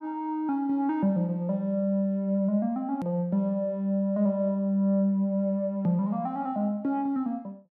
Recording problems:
edit click; at 3 s

